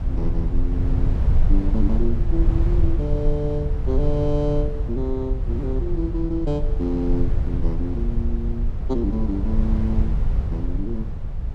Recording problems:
rumble; below 72 Hz, SNR -3 dB

